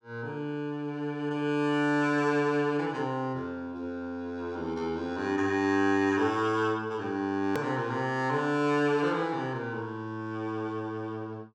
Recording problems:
click at an edit; at 7.5 s

